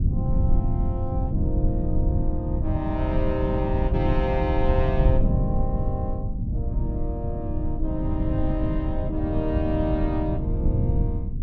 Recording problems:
rumble; below 120 Hz, SNR -3 dB

